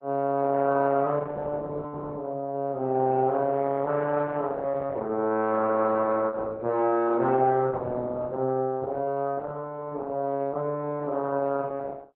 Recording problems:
codec artefacts; Opus, log-spectral distance 2 dB

